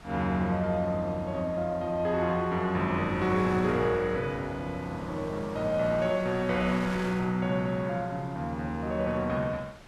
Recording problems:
wind on the microphone; below 2.3 kHz, SNR 19 dB

